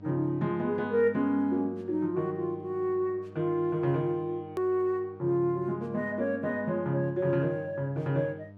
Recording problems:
hum; 50 Hz, harmonics up to 1 kHz, SNR 20 dB
edit click; at 4.5 s

